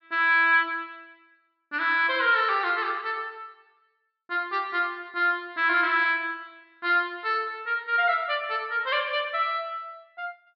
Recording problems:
low-pass filter; nothing above 5.5 kHz

